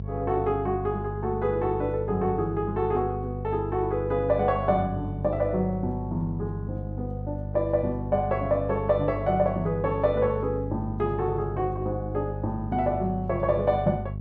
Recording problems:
hum; 50 Hz, harmonics up to 450 Hz, SNR 7 dB

